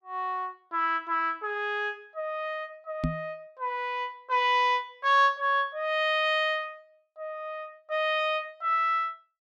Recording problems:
microphone thump; at 3 s; peak +3 dB vs average level

